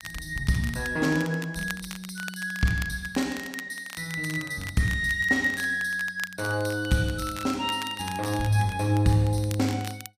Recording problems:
crackling; vinyl, SNR 15 dB

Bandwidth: 15 kHz